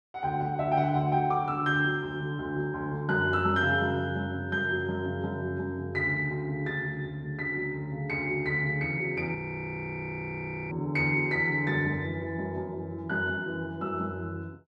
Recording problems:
audio freezing; at 9.5 s for 1.5 s

